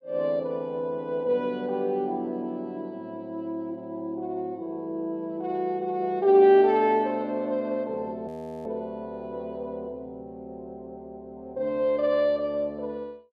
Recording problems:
audio freezing; at 8.5 s

